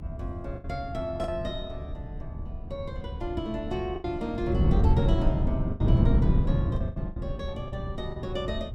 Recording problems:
rumble; below 76 Hz, SNR 8 dB
wind noise; below 170 Hz, SNR -7 dB
packet loss; 6% of the sound replaced, filled with the last packet

